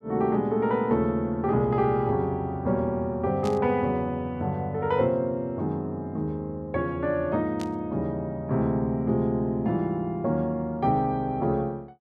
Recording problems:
static burst; at 3.5 s and at 7.5 s; peak -9 dB vs average level

